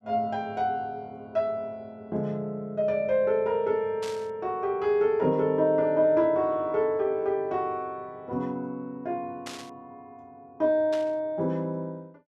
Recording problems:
burst of static; at 4 s, at 9.5 s and at 11 s; peak -8 dB vs average level

